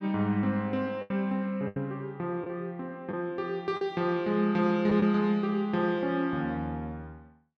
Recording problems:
packet loss; 4% of the sound replaced, filled with the last packet

